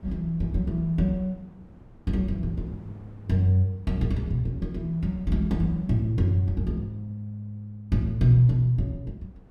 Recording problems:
wind on the microphone; below 280 Hz, SNR 24 dB

